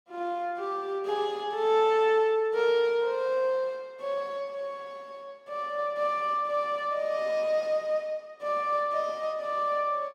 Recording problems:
none

